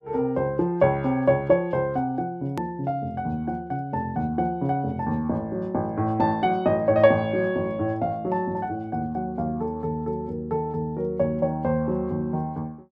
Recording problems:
hard cut with a click; at 2.5 s

